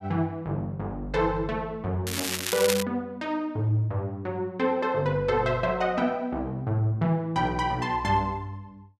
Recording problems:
crackle; at 2 s; loose cable, SNR 2 dB

